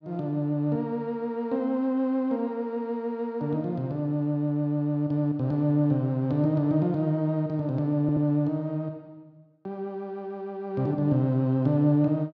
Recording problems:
audio stuttering; at 8 s

